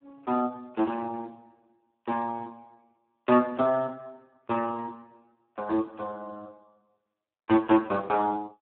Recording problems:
phone line; 280 Hz to 2.2 kHz, Speex

